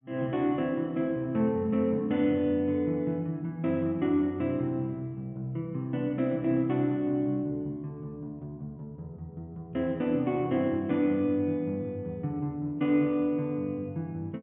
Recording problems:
low-pass filter; nothing above 3.5 kHz

